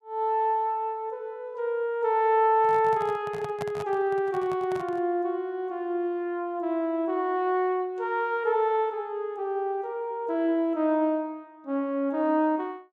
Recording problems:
handling noise; from 2.5 to 5 s; peak -5 dB vs average level

